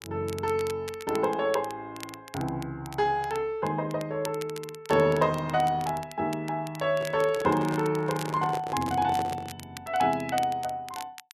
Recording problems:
crackle; vinyl, SNR 17 dB
microphone handling noise; from 7 to 9.5 s; peak -4 dB vs average level

